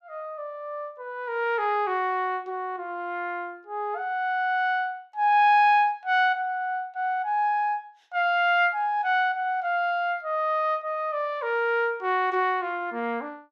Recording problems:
none

